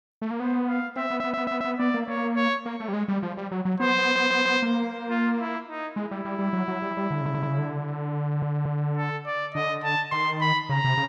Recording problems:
audio stuttering; 4 times, first at 1 s

